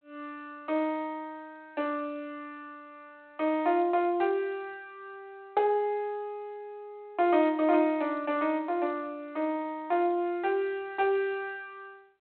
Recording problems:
telephone audio; 320 Hz to 3.6 kHz, G.726

